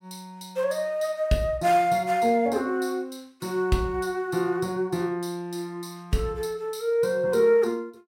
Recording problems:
none

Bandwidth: 16.5 kHz